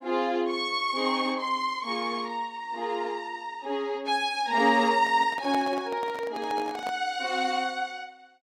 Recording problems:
microphone handling noise; from 5 to 7 s; peak -4 dB vs average level

